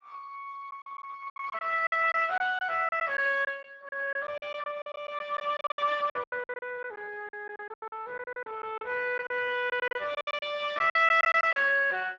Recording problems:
codec artefacts; Speex, log-spectral distance 4 dB, nothing above 7.3 kHz
lost packets; 15% of the sound replaced, filled with silence

